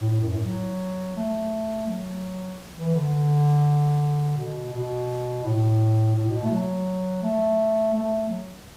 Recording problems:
hiss; slope -3 dB per octave, SNR 20 dB

